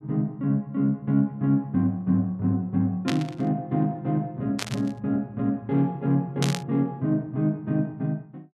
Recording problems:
static burst; at 3 s, at 4.5 s and at 6.5 s; peak +2 dB vs average level

